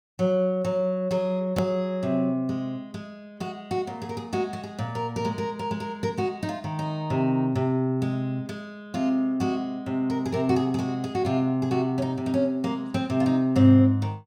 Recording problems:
edit click; at 1.5 s

